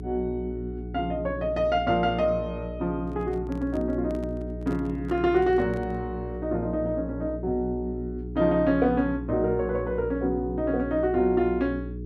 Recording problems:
hum; 60 Hz, harmonics up to 420 Hz, SNR 9 dB
handling noise; from 3 to 6 s; peak -11 dB vs average level

